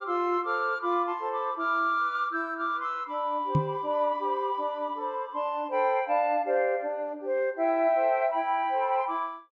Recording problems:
treble missing; nothing above 8 kHz
microphone thump; at 3.5 s; peak +6 dB vs average level

